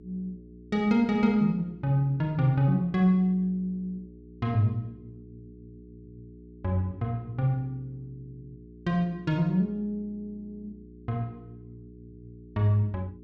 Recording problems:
electrical hum; 60 Hz, harmonics up to 420 Hz, SNR 21 dB

